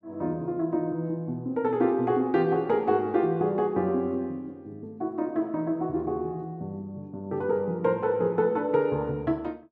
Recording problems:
none

